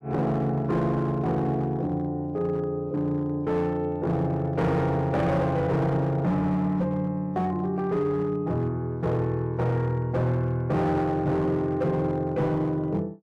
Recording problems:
distorted audio; hard clipping, signal-to-distortion ratio 12 dB

